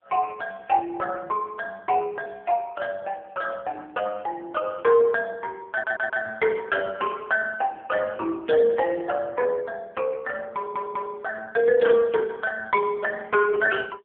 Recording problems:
phone line; 340 Hz to 2.9 kHz, AMR-NB
audio stuttering; at 5.5 s and at 11 s

